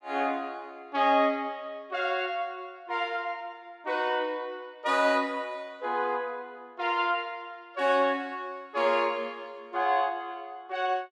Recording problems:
none

